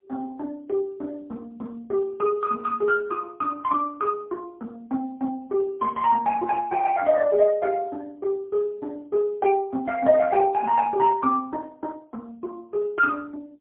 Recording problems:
phone line; 170 Hz to 2.3 kHz, AMR-NB, then MP3

